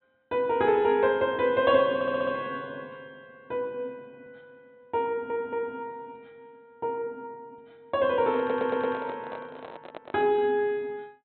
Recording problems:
treble cut off; nothing above 4.1 kHz
audio stuttering; at 2 s, at 5 s and at 8.5 s
microphone handling noise; from 8.5 to 10 s; peak -9 dB vs average level

